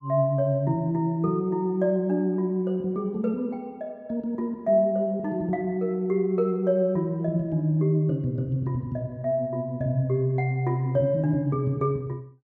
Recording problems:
none

